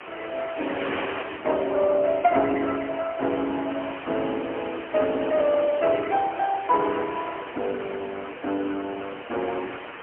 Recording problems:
telephone audio; 260 Hz to 3.1 kHz, AMR-NB, then MP3
wind on the microphone; below 2.5 kHz, SNR 11 dB

